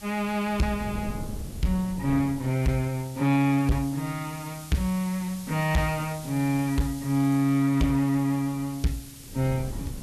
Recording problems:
codec artefacts; Vorbis, log-spectral distance 5 dB, nothing above 13.8 kHz
distortion; hard clipping, signal-to-distortion ratio 12 dB
background hiss; slope +3 dB per octave, SNR 18 dB
wind noise; below 190 Hz, SNR 14 dB

